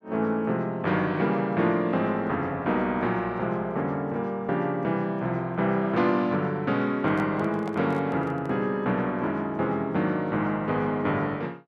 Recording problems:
handling noise; from 7 to 8.5 s; peak -7 dB vs average level

